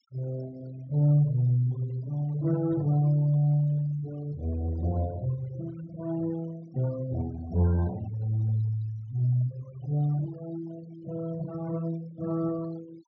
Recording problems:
treble cut off; nothing above 6.6 kHz
denoising artefacts; signal-to-artefact ratio 22 dB

